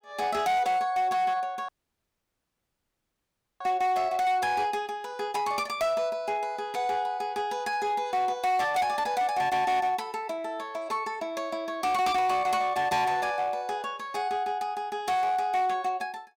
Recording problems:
distorted audio; hard clipping, uneven, signal-to-distortion ratio 11 dB
audio cutting out; at 1.5 s for 2 s

